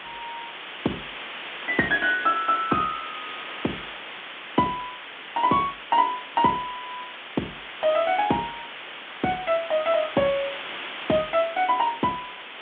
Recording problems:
phone line; 190 Hz to 3.8 kHz, G.726
hiss; SNR 10 dB

